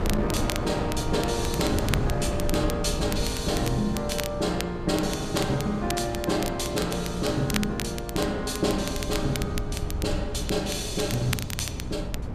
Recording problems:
electrical hum; 60 Hz, harmonics up to 600 Hz, SNR 12 dB
low-frequency rumble; below 90 Hz, SNR 10 dB
wind noise; below 520 Hz, SNR 8 dB
crackle; vinyl, SNR 9 dB

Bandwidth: 14.5 kHz